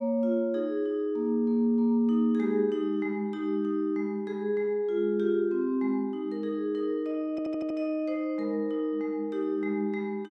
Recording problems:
audio stuttering; at 7.5 s

